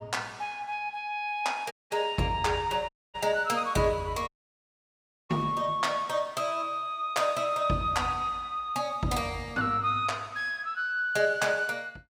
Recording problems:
dropout; at 1.5 s, at 3 s and at 4.5 s for 1 s

